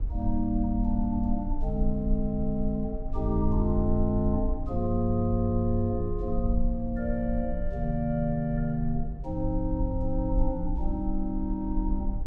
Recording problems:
rumble; below 50 Hz, SNR 5 dB
wind on the microphone; below 310 Hz, SNR 19 dB

